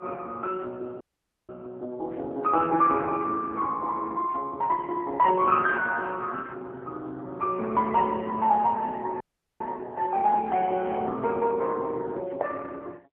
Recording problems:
phone line; 280 Hz to 3.1 kHz, AMR-NB
audio cutting out; at 1 s and at 9 s

